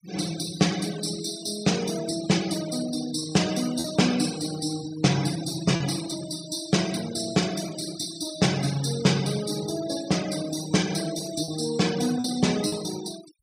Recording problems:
denoising artefacts; signal-to-artefact ratio 13 dB
packet loss; 1.5% of the sound replaced, filled with repeated pitch periods

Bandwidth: 15.5 kHz